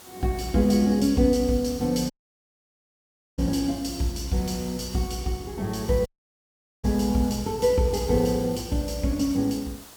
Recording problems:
hiss; SNR 20 dB
audio cutting out; at 2 s for 1.5 s and at 6 s for 1 s

